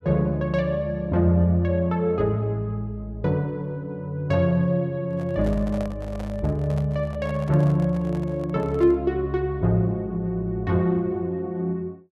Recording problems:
microphone handling noise; from 5 to 9 s; peak -7 dB vs average level

